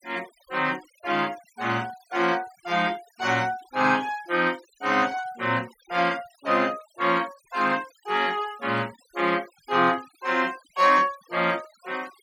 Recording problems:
denoising artefacts; signal-to-artefact ratio 23 dB

